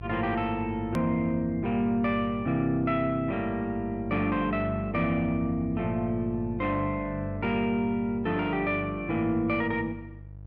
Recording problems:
electrical hum; 50 Hz, harmonics up to 500 Hz, SNR 13 dB
edit click; at 1 s

